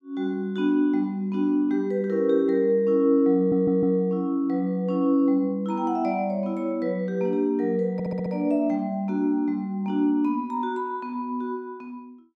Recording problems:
stutter; at 3.5 s and at 8 s

